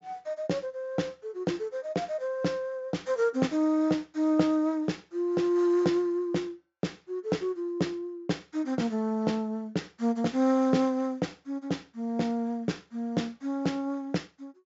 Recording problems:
low-pass filter; nothing above 7.3 kHz

